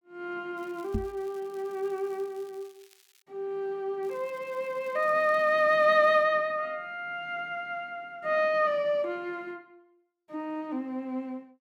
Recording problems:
crackling; from 0.5 to 3 s and from 4 to 6 s; loose cable, SNR 30 dB
microphone thump; at 1 s; peak +1 dB vs average level

